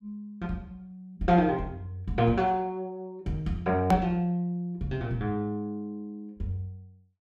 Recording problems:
hard cut with a click; at 4 s

